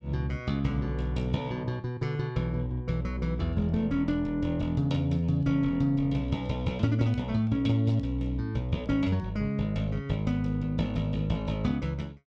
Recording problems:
none

